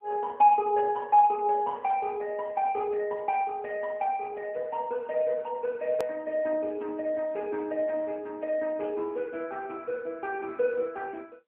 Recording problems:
telephone audio; 260 Hz to 3 kHz, AMR-NB
hard cut with a click; at 6 s

